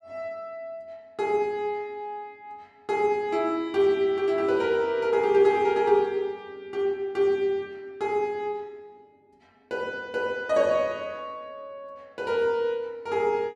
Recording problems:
none

